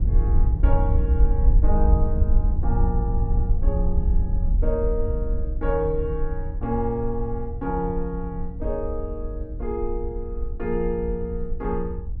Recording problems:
low-frequency rumble; below 64 Hz, SNR -3 dB

